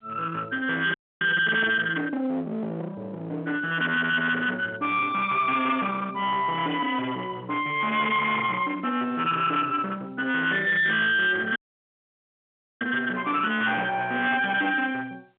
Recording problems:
telephone audio; 300 Hz to 3.5 kHz, G.711
distorted audio; hard clipping, uneven, signal-to-distortion ratio 6 dB
audio cutting out; at 1 s and at 12 s for 1.5 s

